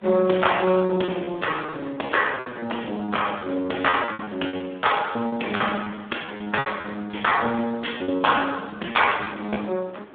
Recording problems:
phone line; 240 Hz to 3.5 kHz, Speex
wind noise; below 1 kHz, SNR 22 dB
packet loss; 15% of the sound replaced, filled with repeated pitch periods

